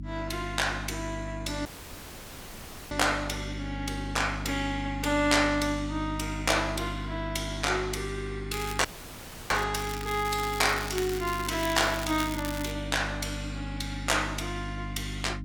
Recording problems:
electrical hum; 50 Hz, harmonics up to 300 Hz, SNR 8 dB
dropout; at 1.5 s for 1.5 s and at 9 s for 0.5 s
crackling; from 8.5 to 9.5 s and from 9.5 to 13 s; loose cable, SNR 10 dB

